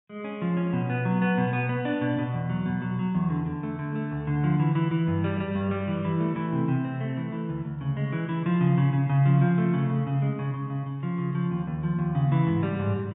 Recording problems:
treble missing; nothing above 4 kHz

